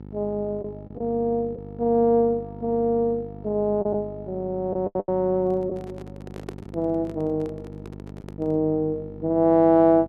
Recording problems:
hum; 50 Hz, harmonics up to 950 Hz, SNR 16 dB
packet loss; 3% of the sound replaced, filled with the last packet
handling noise; from 5.5 to 8.5 s; peak -7 dB vs average level

